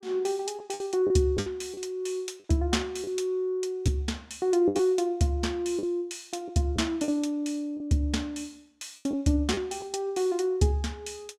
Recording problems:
packet loss; 5% of the sound replaced, filled with the last packet

